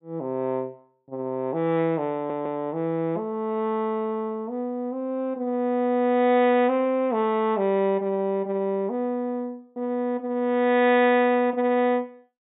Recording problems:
treble cut off; nothing above 4 kHz
stutter; at 2 s

